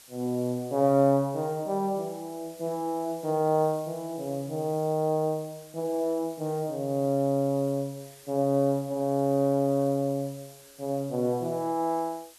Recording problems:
background hiss; slope +1 dB per octave, SNR 22 dB

